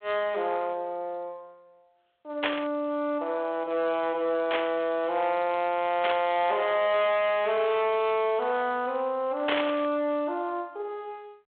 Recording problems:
phone line; 370 Hz to 3.5 kHz, G.726
distortion; hard clipping, uneven, signal-to-distortion ratio 12 dB
static burst; 4 times, first at 2.5 s; peak +3 dB vs average level

